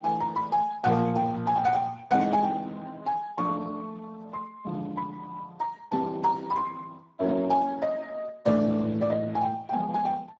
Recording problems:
codec artefacts; Speex, then Speex, log-spectral distance 3 dB, nothing above 7.3 kHz

